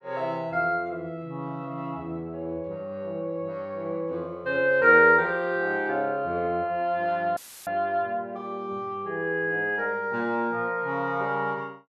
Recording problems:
dropout; at 7.5 s; filled with static

